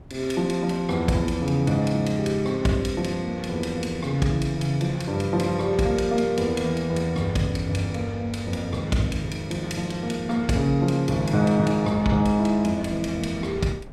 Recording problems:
wind noise; below 230 Hz, SNR 22 dB

